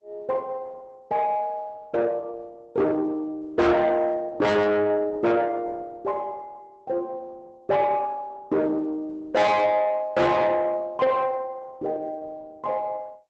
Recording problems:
lossy codec; Opus, log-spectral distance 2 dB, nothing above 7.8 kHz
distortion; soft clipping, signal-to-distortion ratio 6 dB

